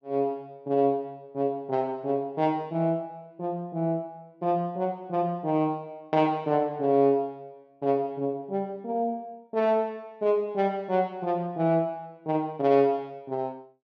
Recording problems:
none

